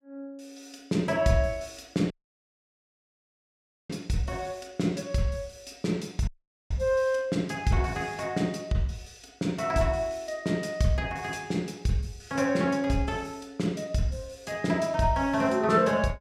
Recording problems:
dropout; at 2 s for 2 s and at 6.5 s

